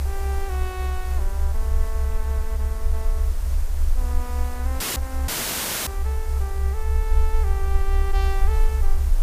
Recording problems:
background hiss; slope -4 dB per octave, SNR 6 dB
low-frequency rumble; below 68 Hz, SNR -11 dB
audio cutting out; at 5 s and at 5.5 s for 0.5 s

